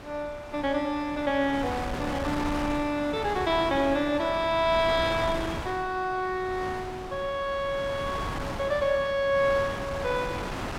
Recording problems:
wind on the microphone; below 1.4 kHz, SNR 8 dB

